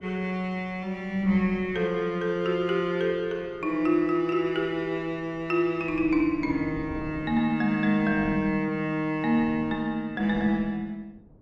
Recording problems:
wind on the microphone; below 320 Hz, SNR 19 dB

